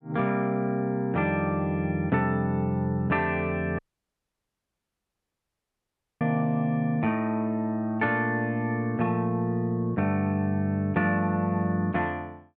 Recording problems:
audio cutting out; at 4 s for 2.5 s

